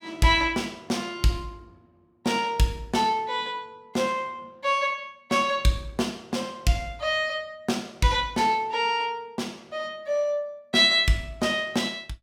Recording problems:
none

